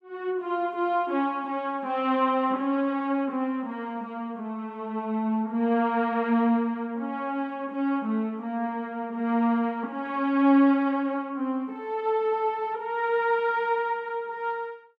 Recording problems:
none

